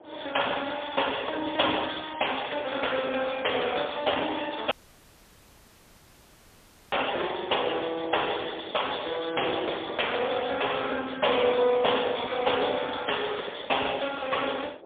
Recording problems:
phone line; 320 Hz to 3.6 kHz, AMR-NB, then MP3
wind on the microphone; below 710 Hz, SNR 20 dB
audio cutting out; at 4.5 s for 2 s

